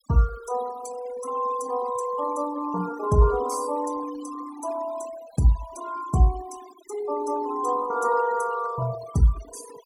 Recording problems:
noise reduction artefacts; signal-to-artefact ratio 16 dB

